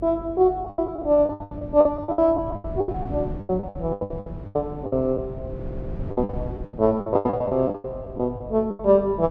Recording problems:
hum; 50 Hz, harmonics up to 600 Hz, SNR 19 dB
wind noise; below 200 Hz, SNR 14 dB
lost packets; 21% of the sound replaced, filled with the last packet
stutter; at 5.5 s

